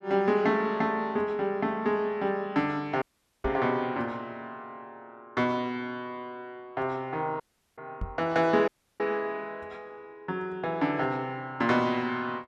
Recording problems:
audio cutting out; at 3 s, at 7.5 s and at 8.5 s
microphone bump; at 3.5 s and at 8 s; peak -3 dB vs average level

